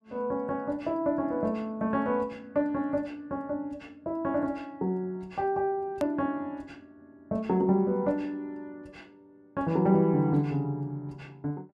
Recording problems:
hard cut with a click; at 6 s

